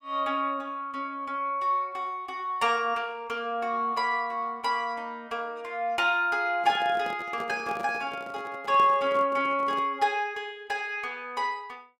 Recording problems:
microphone handling noise; from 6.5 to 10 s; peak -6 dB vs average level

